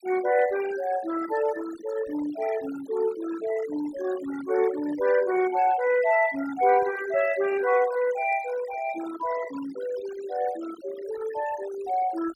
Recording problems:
denoising artefacts; signal-to-artefact ratio 15 dB

